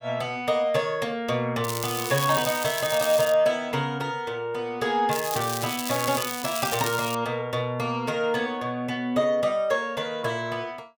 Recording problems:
crackling; from 1.5 to 3.5 s and from 5 to 7 s; loose cable, SNR 6 dB

